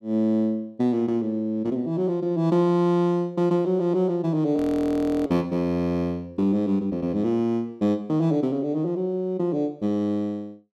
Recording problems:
audio freezing; at 4.5 s for 0.5 s

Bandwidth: 13 kHz